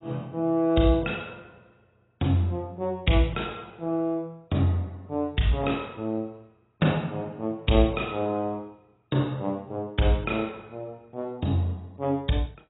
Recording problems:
codec artefacts; AAC, log-spectral distance 3 dB, nothing above 3.8 kHz

